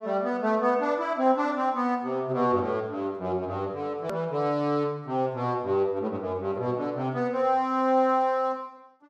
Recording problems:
hard cut with a click; at 4 s

